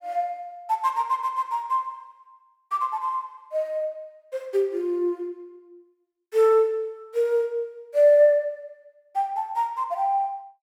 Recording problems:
none

